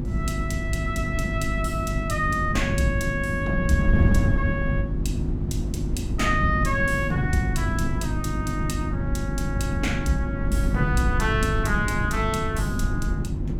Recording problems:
hum; 50 Hz, harmonics up to 350 Hz, SNR 3 dB
wind noise; below 180 Hz, SNR 1 dB

